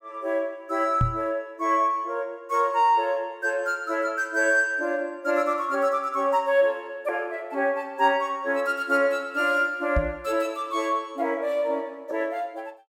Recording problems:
knock on the microphone; at 1 s and at 10 s; peak +4 dB vs average level

